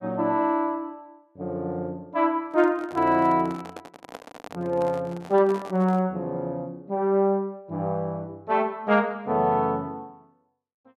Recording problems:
microphone handling noise; from 2.5 to 6 s; peak -10 dB vs average level

